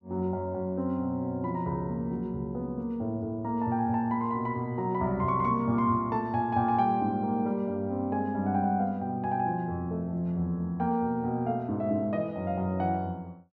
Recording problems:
none

